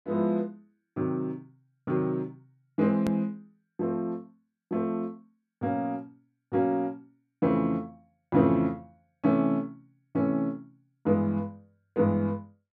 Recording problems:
click at an edit; at 3 s

